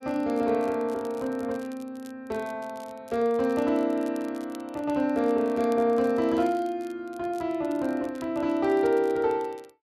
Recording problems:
crackling; vinyl, SNR 27 dB

